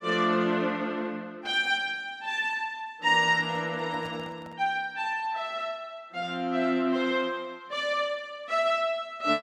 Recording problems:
handling noise; from 3 to 4.5 s; peak -12 dB vs average level

